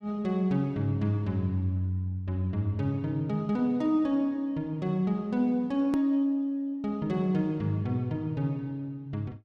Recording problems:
hard cut with a click; at 6 s

